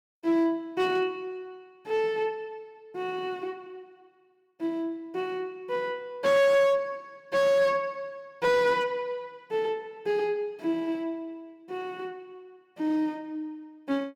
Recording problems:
distorted audio; hard clipping, uneven, signal-to-distortion ratio 11 dB

